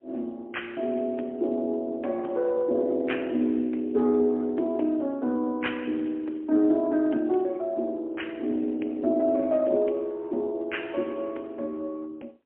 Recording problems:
telephone audio; 220 Hz to 3.3 kHz, AMR-NB, then MP3

